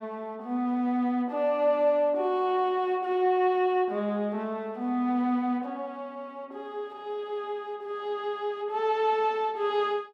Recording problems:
none

